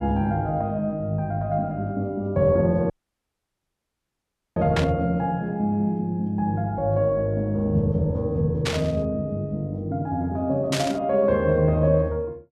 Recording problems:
dropout; at 3 s for 1.5 s
burst of static; at 5 s, at 8.5 s and at 11 s; peak +1 dB vs average level

